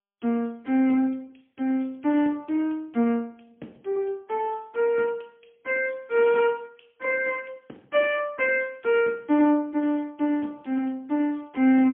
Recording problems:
telephone audio; 190 Hz to 3.3 kHz, AMR-NB, then MP3

